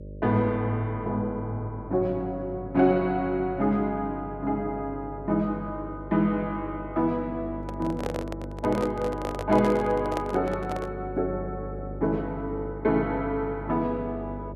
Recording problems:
hum; 50 Hz, harmonics up to 600 Hz, SNR 12 dB
microphone handling noise; from 7.5 to 11 s; peak +1 dB vs average level

